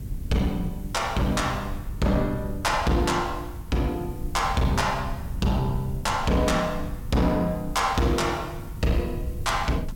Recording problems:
distortion; hard clipping, uneven, signal-to-distortion ratio 11 dB
hiss; SNR 26 dB
rumble; below 110 Hz, SNR 10 dB

